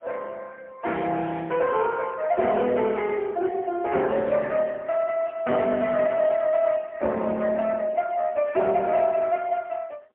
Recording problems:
phone line; 260 Hz to 3.3 kHz, AMR-NB, then MP3

